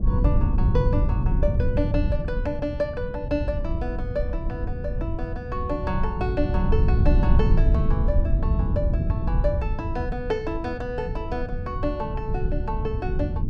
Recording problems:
low-frequency rumble; below 110 Hz, SNR -4 dB

